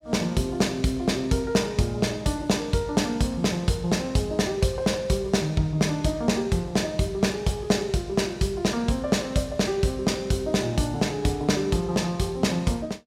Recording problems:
none

